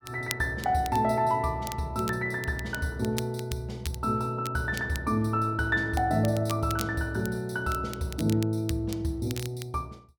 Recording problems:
crackling; vinyl, SNR 14 dB

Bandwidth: 17.5 kHz